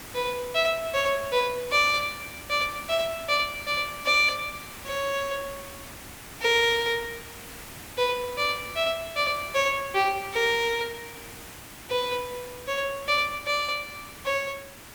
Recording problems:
hiss; slope -2 dB per octave, SNR 15 dB

